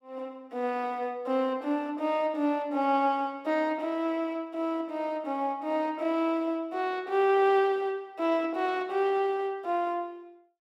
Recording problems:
none

